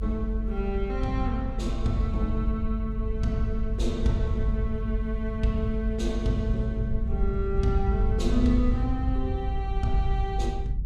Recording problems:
rumble; below 68 Hz, strongest tone 48 Hz, SNR 0 dB

